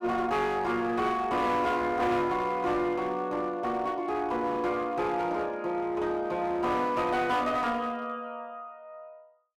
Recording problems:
distorted audio; hard clipping, uneven, signal-to-distortion ratio 10 dB

